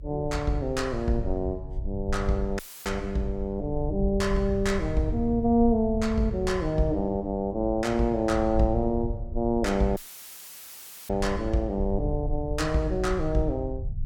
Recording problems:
low-frequency rumble; below 84 Hz, SNR 8 dB
audio cutting out; at 2.5 s and at 10 s for 1 s; filled with static

